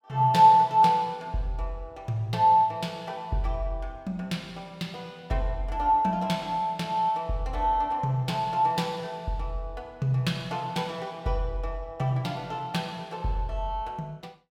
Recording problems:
none

